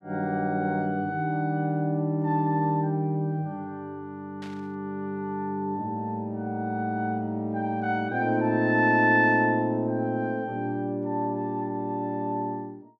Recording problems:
static burst; at 4.5 s; peak -14 dB vs average level

